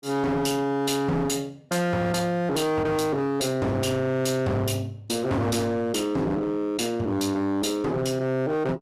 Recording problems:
distorted audio; hard clipping, signal-to-distortion ratio 8 dB

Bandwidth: 14 kHz